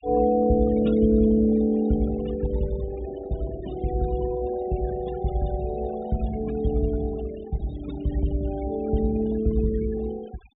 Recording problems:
treble missing; nothing above 4 kHz
noise reduction artefacts; signal-to-artefact ratio 18 dB

